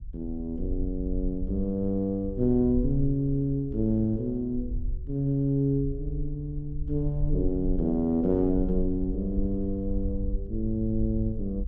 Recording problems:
rumble; below 56 Hz, SNR 8 dB

